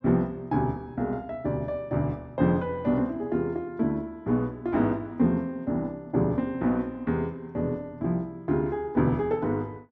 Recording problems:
none

